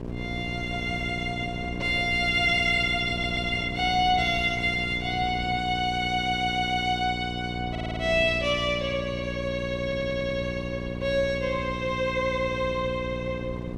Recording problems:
electrical hum; 60 Hz, harmonics up to 1.1 kHz, SNR 8 dB
wind on the microphone; below 310 Hz, SNR 16 dB
audio stuttering; 4 times, first at 3 s

